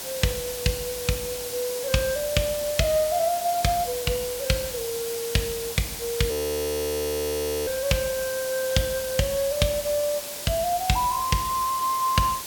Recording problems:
background hiss; SNR 6 dB
frozen audio; at 6.5 s for 1.5 s

